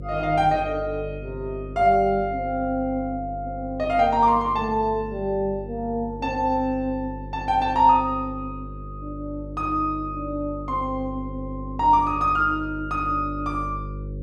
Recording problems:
hum; 50 Hz, harmonics up to 550 Hz, SNR 13 dB

